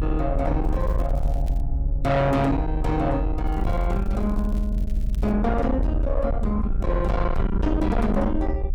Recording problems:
distortion; soft clipping, signal-to-distortion ratio 8 dB
rumble; below 68 Hz, strongest tone 42 Hz, SNR 1 dB
crackle; at 0.5 s and from 3.5 to 5.5 s; loose cable, SNR 29 dB

